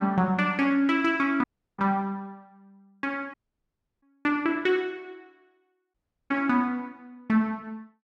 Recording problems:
dropout; at 1.5 s, at 3.5 s for 0.5 s and at 6 s

